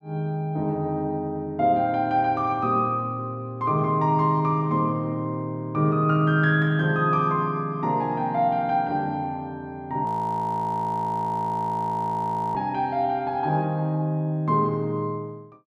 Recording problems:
audio freezing; at 10 s for 2.5 s

